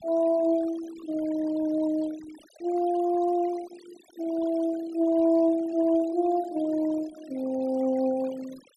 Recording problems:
noise reduction artefacts; signal-to-artefact ratio 21 dB

